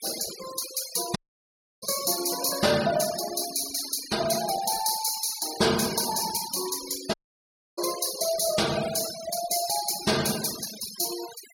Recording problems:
denoising artefacts; signal-to-artefact ratio 9 dB
audio cutting out; at 1 s for 0.5 s and at 7 s for 0.5 s

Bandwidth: 16.5 kHz